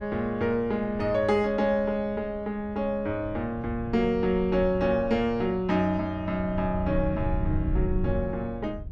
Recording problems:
wind noise; below 100 Hz, SNR 10 dB

